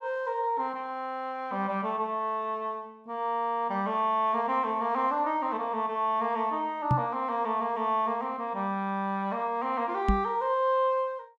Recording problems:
knock on the microphone; at 7 s and at 10 s; peak +6 dB vs average level

